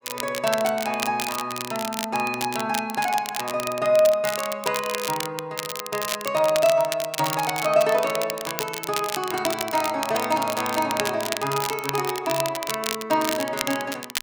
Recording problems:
crackle; vinyl, SNR 6 dB

